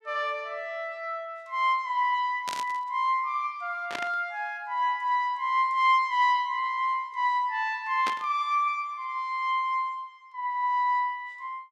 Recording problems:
static burst; at 2.5 s, at 4 s and at 8 s; peak -2 dB vs average level

